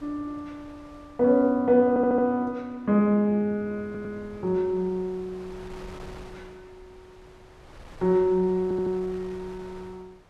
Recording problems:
wind noise; below 1 kHz, SNR 24 dB
audio stuttering; at 2 s, at 4 s and at 8.5 s

